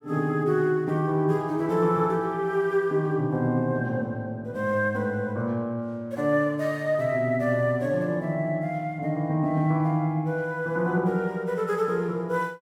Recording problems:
none

